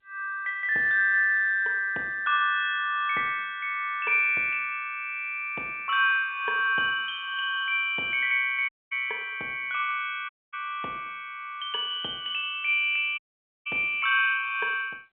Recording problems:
telephone audio; 280 Hz to 3.5 kHz, G.711
audio cutting out; at 8.5 s, at 10 s and at 13 s

